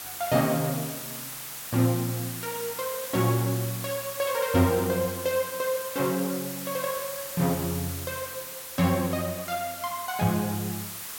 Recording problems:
hiss; slope 0 dB per octave, SNR 7 dB

